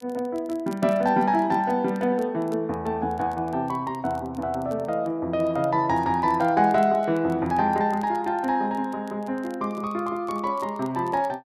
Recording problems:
crackling; vinyl, SNR 29 dB

